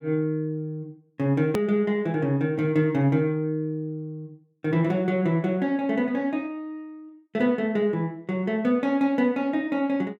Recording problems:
hard cut with a click; at 1.5 s

